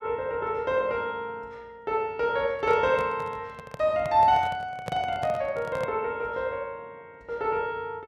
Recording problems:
handling noise; from 2.5 to 6 s; peak -3 dB vs average level

